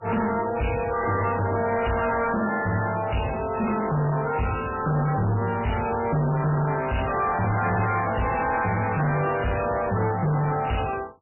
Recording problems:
codec artefacts; MP3, log-spectral distance 6 dB, nothing above 2.9 kHz
distortion; soft clipping, signal-to-distortion ratio 7 dB

